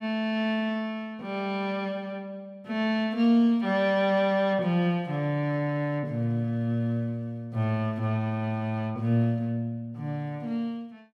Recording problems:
none

